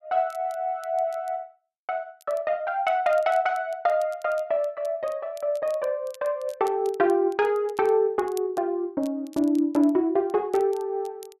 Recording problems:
crackle; vinyl, SNR 27 dB

